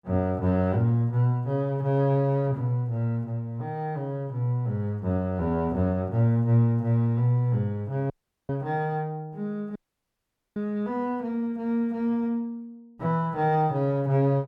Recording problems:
audio cutting out; at 8 s and at 10 s for 1 s

